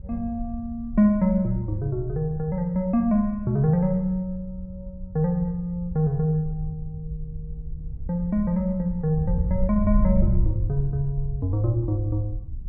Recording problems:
wind on the microphone; below 74 Hz, SNR 8 dB

